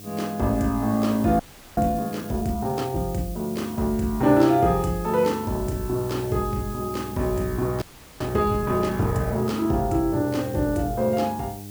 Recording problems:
electrical hum; 50 Hz, harmonics up to 800 Hz, SNR 17 dB
hiss; slope +6 dB per octave, SNR 18 dB
audio freezing; at 1.5 s and at 8 s

